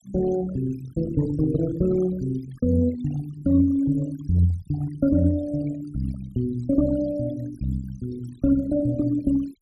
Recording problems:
denoising artefacts; signal-to-artefact ratio 20 dB

